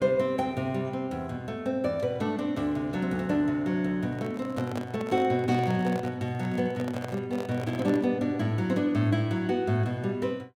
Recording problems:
handling noise; from 4 to 8 s; peak -4 dB vs average level

